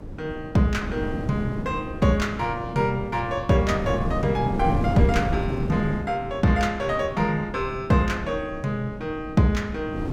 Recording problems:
electrical hum; 50 Hz, harmonics up to 550 Hz, SNR 24 dB
wind noise; below 280 Hz, SNR 7 dB

